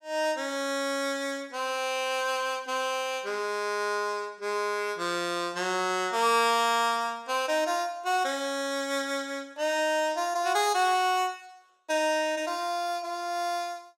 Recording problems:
none

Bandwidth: 16 kHz